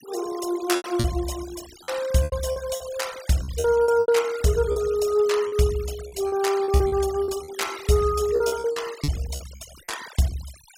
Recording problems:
noise reduction artefacts; signal-to-artefact ratio 16 dB
lost packets; 11% of the sound replaced, filled with repeated pitch periods

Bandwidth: 16 kHz